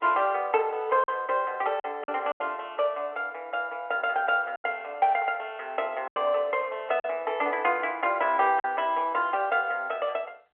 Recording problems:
phone line; 320 Hz to 3.2 kHz, G.711
packet loss; 4% of the sound replaced, filled with silence

